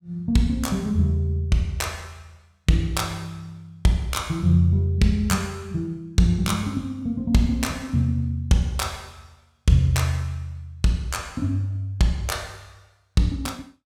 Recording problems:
none

